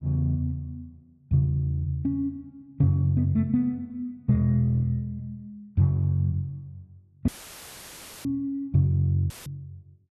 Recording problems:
dropout; at 7.5 s for 1 s and at 9.5 s; filled with static

